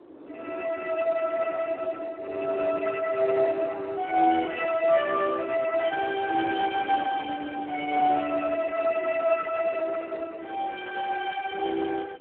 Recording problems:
telephone audio; 260 Hz to 2.6 kHz, Speex
wind on the microphone; below 490 Hz, SNR 18 dB

